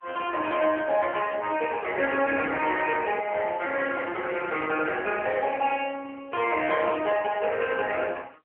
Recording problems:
phone line; 370 Hz to 3.1 kHz, AMR-NB

